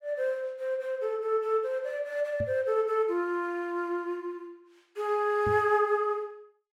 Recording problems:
knock on the microphone; at 2.5 s and at 5.5 s; peak -3 dB vs average level

